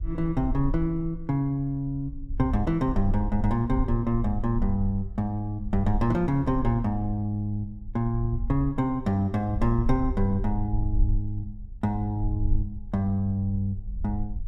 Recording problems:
rumble; below 52 Hz, SNR 7 dB

